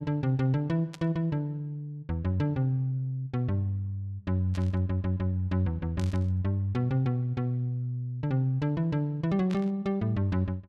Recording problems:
static burst; 4 times, first at 1 s; peak -10 dB vs average level

